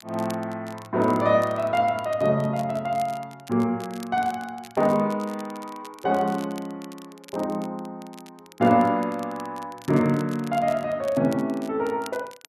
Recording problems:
crackle; vinyl, SNR 23 dB

